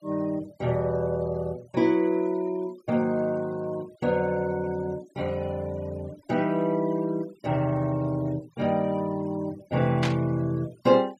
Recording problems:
denoising artefacts; signal-to-artefact ratio 24 dB
burst of static; at 10 s; peak 0 dB vs average level

